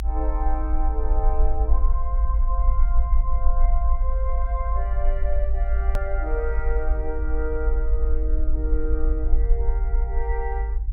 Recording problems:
low-frequency rumble; below 52 Hz, SNR -8 dB
hard cut with a click; at 6 s

